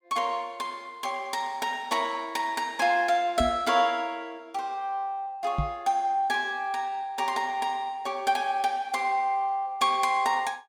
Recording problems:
microphone thump; at 3.5 s and at 5.5 s; peak +2 dB vs average level

